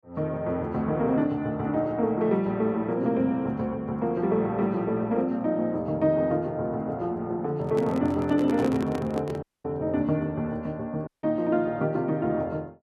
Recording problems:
handling noise; from 7.5 to 9.5 s; peak -2 dB vs average level
audio cutting out; at 9.5 s and at 11 s

